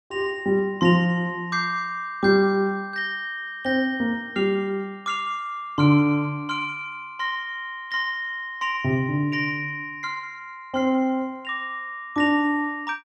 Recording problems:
none

